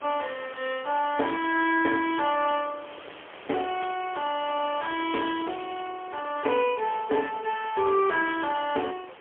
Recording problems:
telephone audio; 300 Hz to 3.3 kHz, AMR-NB, then MP3
background hiss; SNR 18 dB

